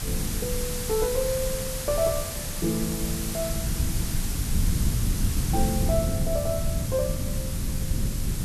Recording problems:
background hiss; slope 0 dB per octave, SNR 3 dB
rumble; below 66 Hz, strongest tone 24 Hz, SNR 8 dB
wind on the microphone; below 150 Hz, SNR 1 dB

